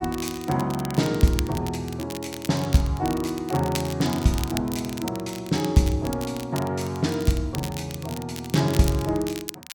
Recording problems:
crackle; vinyl, SNR 13 dB

